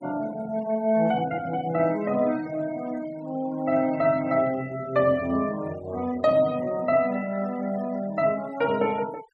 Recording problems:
noise reduction artefacts; signal-to-artefact ratio 20 dB

